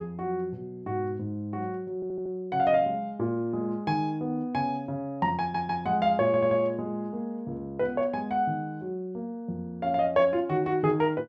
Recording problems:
stutter; at 2 s, at 5.5 s and at 6.5 s

